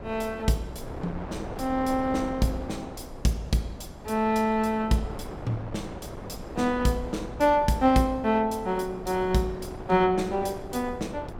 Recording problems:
wind on the microphone; below 630 Hz, SNR 13 dB

